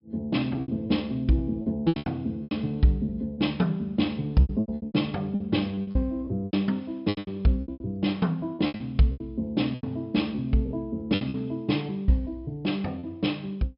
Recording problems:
low-pass filter; nothing above 5.5 kHz
lost packets; 14% of the sound replaced, filled with repeated pitch periods

